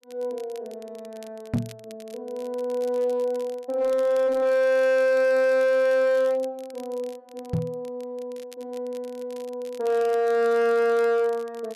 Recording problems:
distortion; hard clipping, uneven, signal-to-distortion ratio 10 dB
crackling; vinyl, SNR 27 dB
microphone thump; at 1.5 s and at 7.5 s; peak +2 dB vs average level

